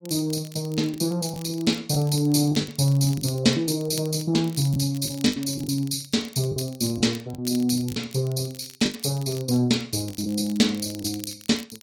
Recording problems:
codec artefacts; AAC, log-spectral distance 4 dB, nothing above 14.7 kHz
crackle; vinyl, SNR 20 dB
packet loss; 6% of the sound replaced, filled with the last packet

